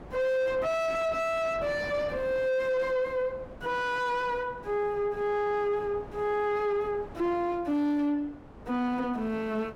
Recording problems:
distortion; soft clipping, signal-to-distortion ratio 7 dB
wind noise; below 730 Hz, SNR 17 dB

